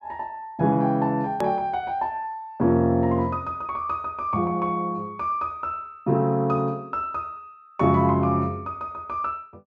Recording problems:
click at an edit; at 1.5 s

